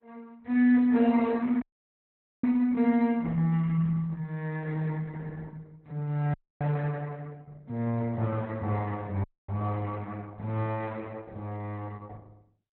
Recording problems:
codec artefacts; Opus, log-spectral distance 2 dB, nothing above 4 kHz
dropout; at 1.5 s for 1 s, at 6.5 s and at 9 s

